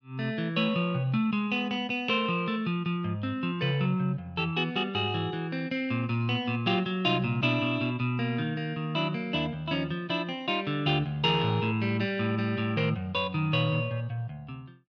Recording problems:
none

